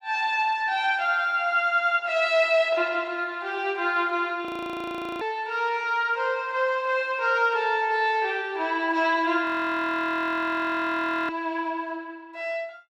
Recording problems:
audio freezing; at 4.5 s for 1 s and at 9.5 s for 2 s

